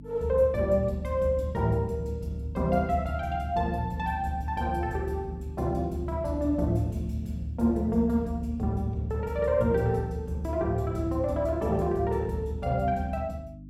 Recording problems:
mains hum; 50 Hz, harmonics up to 300 Hz, SNR 17 dB

